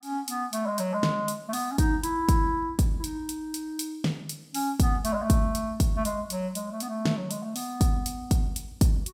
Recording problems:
none

